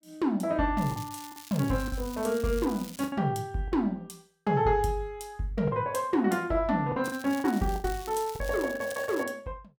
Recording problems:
lost packets; 7% of the sound replaced, filled with the last packet
crackling; from 1 to 3 s and from 7 to 9 s; loose cable, SNR 16 dB

